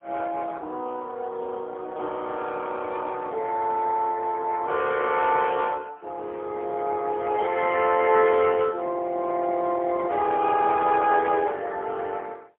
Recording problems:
phone line; 280 Hz to 3.5 kHz, AMR-NB, then MP3

